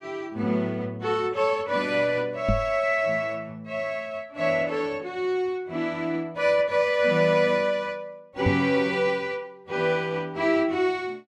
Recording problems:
knock on the microphone; at 2.5 s and at 8.5 s; peak +4 dB vs average level

